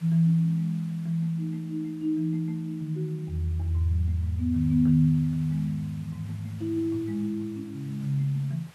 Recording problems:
hiss; slope -2 dB per octave, SNR 27 dB

